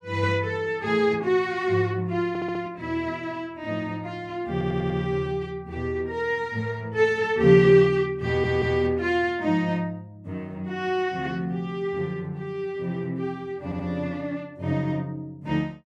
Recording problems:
audio stuttering; 4 times, first at 2.5 s

